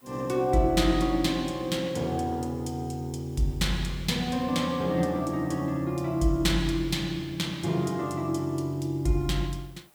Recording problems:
hiss; slope -3 dB per octave, SNR 29 dB

